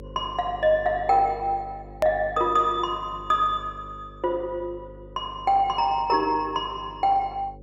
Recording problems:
electrical hum; 50 Hz, harmonics up to 550 Hz, SNR 20 dB
edit click; at 2 s

